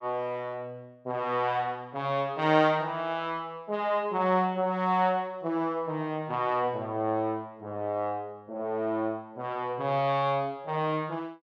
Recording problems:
none

